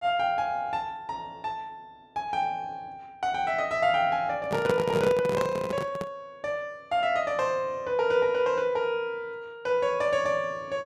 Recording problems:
handling noise; from 4.5 to 6 s; peak +2 dB vs average level

